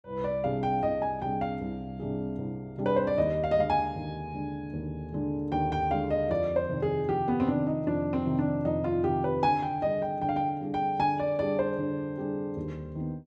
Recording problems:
none

